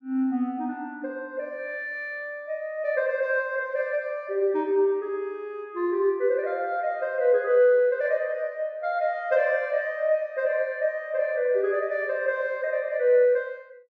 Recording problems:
none

